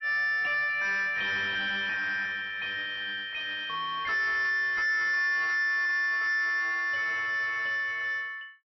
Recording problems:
codec artefacts; MP3, log-spectral distance 2 dB, nothing above 5.3 kHz
distorted audio; soft clipping, signal-to-distortion ratio 6 dB

